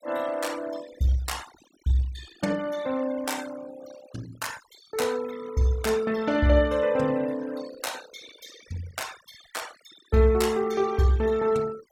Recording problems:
noise reduction artefacts; signal-to-artefact ratio 18 dB

